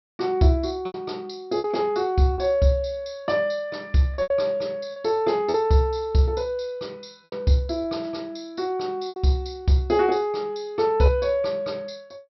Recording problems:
treble cut off; nothing above 5.7 kHz
lost packets; 5% of the sound replaced, filled with repeated pitch periods

